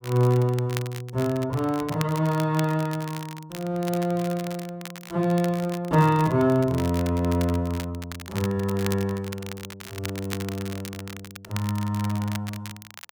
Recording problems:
crackle; vinyl, SNR 14 dB

